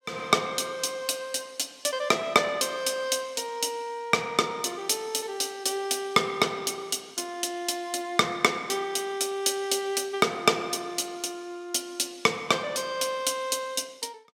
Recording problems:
none

